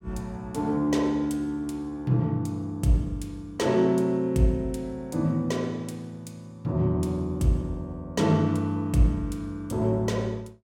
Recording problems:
none

